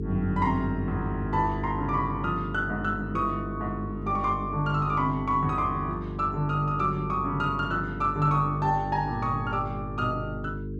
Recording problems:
hum; 50 Hz, harmonics up to 450 Hz, SNR 7 dB

